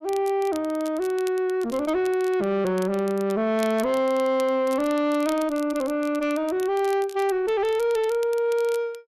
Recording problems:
distortion; soft clipping, signal-to-distortion ratio 10 dB
crackle; vinyl, SNR 21 dB

